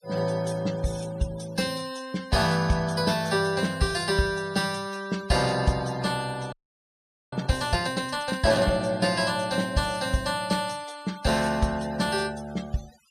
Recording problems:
noise reduction artefacts; signal-to-artefact ratio 19 dB
audio freezing; at 6.5 s for 1 s

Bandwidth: 13.5 kHz